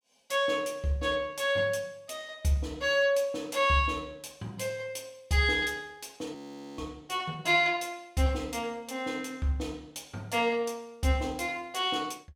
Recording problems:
audio freezing; at 6.5 s

